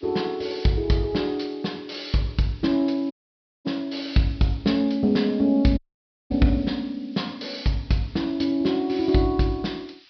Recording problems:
low-pass filter; nothing above 5.5 kHz
background hiss; SNR 27 dB
audio cutting out; at 3 s for 0.5 s and at 6 s for 0.5 s

